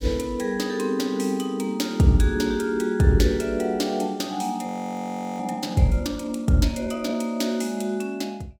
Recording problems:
audio freezing; at 4.5 s for 0.5 s

